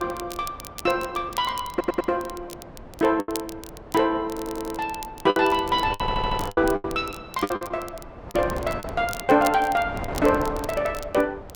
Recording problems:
wind on the microphone; below 740 Hz, SNR 12 dB
crackle; vinyl, SNR 17 dB
packet loss; 7% of the sound replaced, filled with the last packet
stutter; at 1.5 s, at 4.5 s and at 6 s

